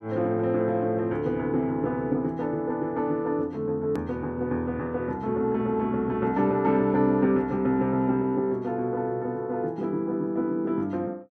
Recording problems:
edit click; at 4 s

